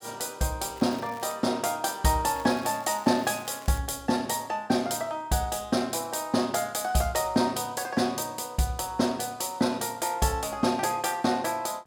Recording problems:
crackle; at 1 s and from 2.5 to 4 s; loose cable, SNR 22 dB

